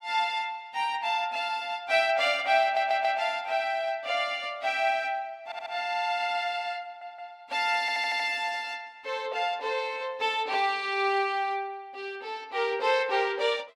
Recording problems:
stutter; 4 times, first at 2.5 s

